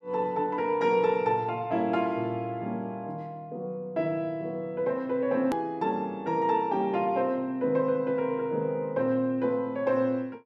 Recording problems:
edit click; at 5.5 s

